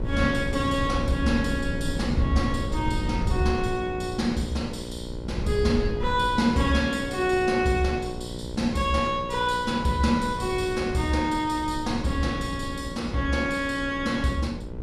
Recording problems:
hum; 60 Hz, harmonics up to 1.5 kHz, SNR 12 dB
wind on the microphone; below 150 Hz, SNR 9 dB

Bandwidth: 14 kHz